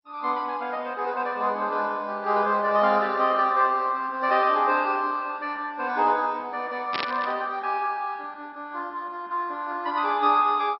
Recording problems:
lossy compression; MP2, log-spectral distance 3 dB, nothing above 5.5 kHz
static burst; at 7 s; peak -1 dB vs average level

